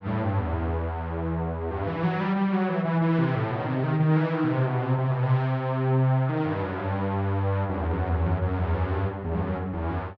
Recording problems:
none

